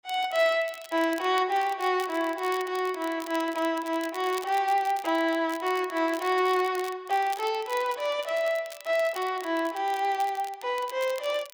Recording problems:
crackling; vinyl, SNR 19 dB

